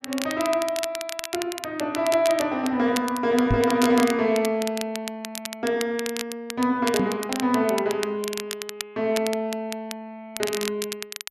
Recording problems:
crackling; vinyl, SNR 9 dB
knock on the microphone; at 3.5 s and at 7 s; peak +5 dB vs average level

